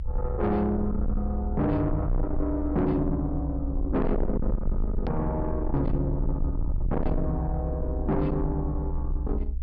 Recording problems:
low-pass filter; nothing above 5.5 kHz
distortion; soft clipping, signal-to-distortion ratio 7 dB
rumble; below 66 Hz, SNR 3 dB
edit click; at 5 s

